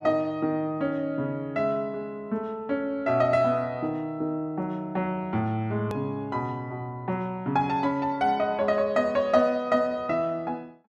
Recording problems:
hard cut with a click; at 6 s

